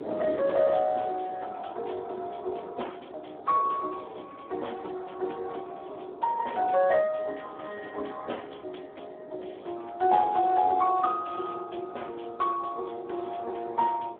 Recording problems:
phone line; 300 Hz to 3.3 kHz, Speex
wind noise; below 590 Hz, SNR 17 dB

